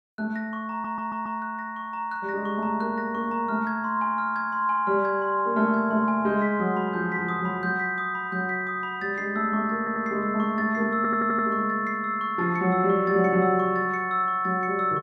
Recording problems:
audio stuttering; at 0.5 s, at 10 s and at 11 s

